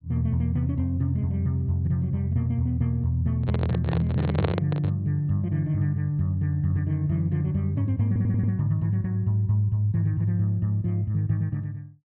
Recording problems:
low-pass filter; nothing above 4.4 kHz
handling noise; from 3.5 to 5 s; peak +1 dB vs average level
stutter; at 8 s

